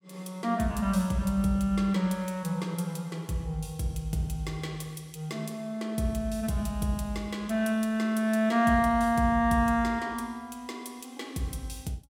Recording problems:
none

